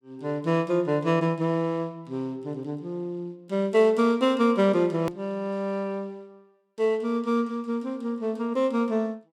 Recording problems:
edit click; at 5 s

